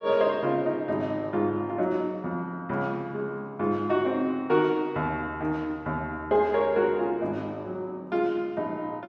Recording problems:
none

